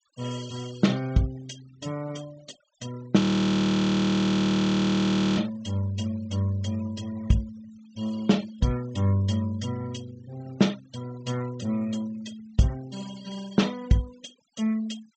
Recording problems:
low-pass filter; nothing above 8 kHz
denoising artefacts; signal-to-artefact ratio 22 dB
frozen audio; at 3 s for 2 s

